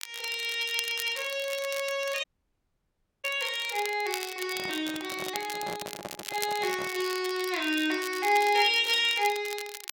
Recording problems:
crackling; vinyl, SNR 11 dB
dropout; at 2 s for 1 s
handling noise; from 4.5 to 7 s; peak -6 dB vs average level

